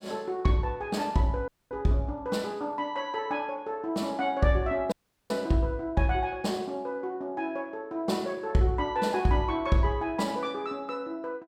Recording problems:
audio cutting out; at 1.5 s and at 5 s

